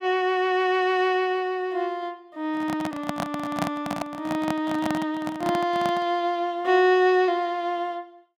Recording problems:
microphone handling noise; from 2.5 to 6 s; peak +1 dB vs average level

